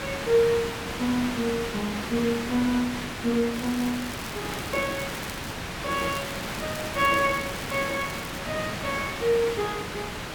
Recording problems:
background hiss; SNR 5 dB
crackling; from 3.5 to 5.5 s and from 6 to 8.5 s; loose cable, SNR 16 dB

